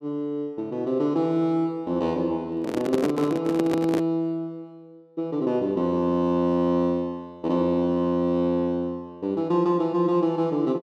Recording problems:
handling noise; from 2.5 to 4 s; peak +2 dB vs average level

